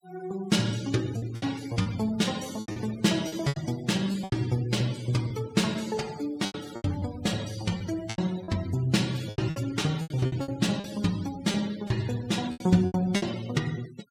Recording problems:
noise reduction artefacts; signal-to-artefact ratio 16 dB
packet loss; 11% of the sound replaced, filled with repeated pitch periods

